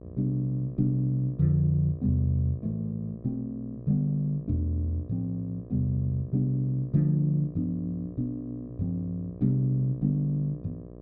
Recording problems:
hum; 60 Hz, harmonics up to 1.1 kHz, SNR 18 dB

